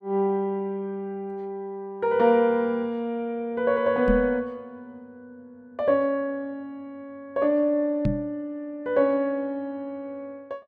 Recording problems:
microphone bump; at 4 s and at 8 s; peak +4 dB vs average level

